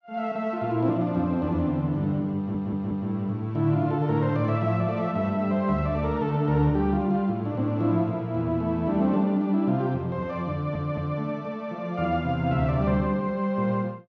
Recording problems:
stutter; at 2.5 s and at 11 s

